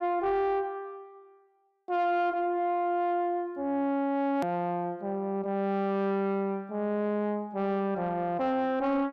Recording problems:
distorted audio; soft clipping, signal-to-distortion ratio 11 dB
hard cut with a click; at 4.5 s

